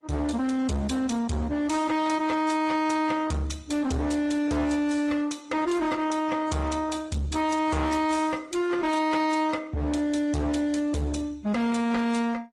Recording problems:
lossy compression; AAC, then Opus, log-spectral distance 3 dB
distorted audio; hard clipping, uneven, signal-to-distortion ratio 6 dB

